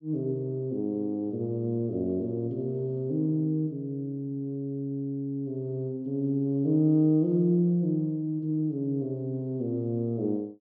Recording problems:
treble cut off; nothing above 7 kHz

